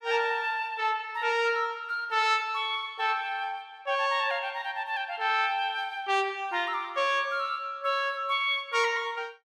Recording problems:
none

